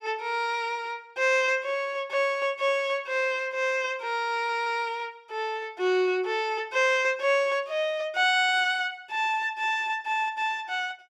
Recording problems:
stutter; at 4.5 s

